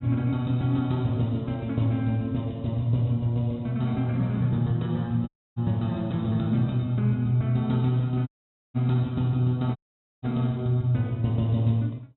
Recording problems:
treble cut off; nothing above 4 kHz
audio cutting out; at 5.5 s, at 8.5 s and at 10 s

